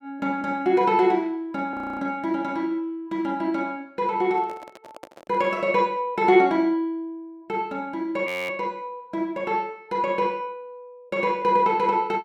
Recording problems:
audio freezing; at 1.5 s and at 8.5 s
microphone handling noise; from 4.5 to 5.5 s; peak -12 dB vs average level

